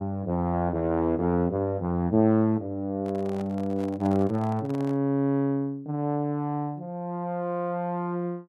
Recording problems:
microphone handling noise; from 3 to 5 s; peak -10 dB vs average level

